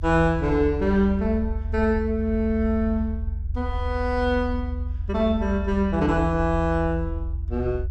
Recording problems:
low-frequency rumble; below 78 Hz, SNR 6 dB

